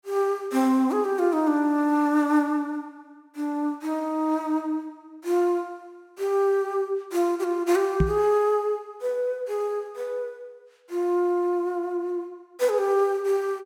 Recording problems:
microphone bump; at 8 s; peak +6 dB vs average level

